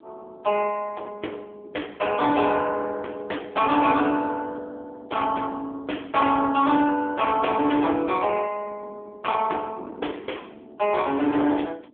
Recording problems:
telephone audio; 240 Hz to 3.4 kHz, AMR-NB
distorted audio; hard clipping, signal-to-distortion ratio 13 dB
wind on the microphone; below 1.1 kHz, SNR 23 dB

